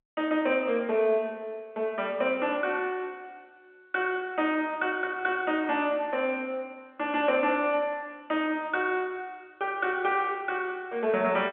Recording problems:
phone line; 260 Hz to 3.4 kHz, G.711

